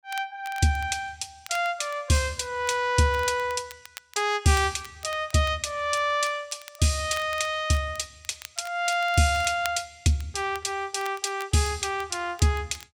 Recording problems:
crackling; vinyl, SNR 20 dB

